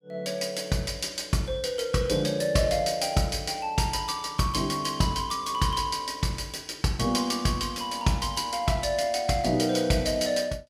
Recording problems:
none

